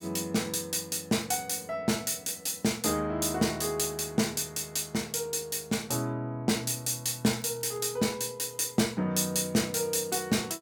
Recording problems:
crackling; at 7.5 s; loose cable, SNR 29 dB

